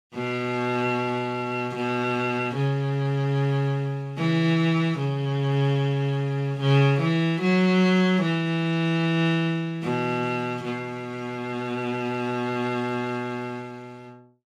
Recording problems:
none

